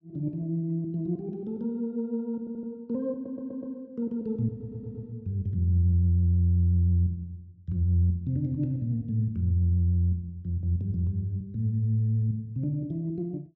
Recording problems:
audio stuttering; at 2.5 s, at 3 s and at 4.5 s

